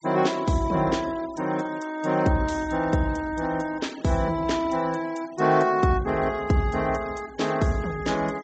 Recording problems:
treble missing; nothing above 8 kHz
denoising artefacts; signal-to-artefact ratio 22 dB

